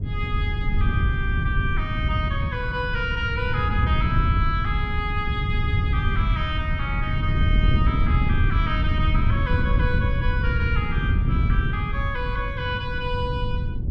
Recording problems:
wind noise; below 120 Hz, SNR -4 dB

